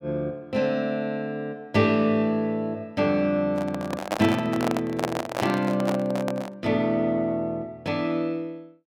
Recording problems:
handling noise; from 3.5 to 6.5 s; peak +3 dB vs average level

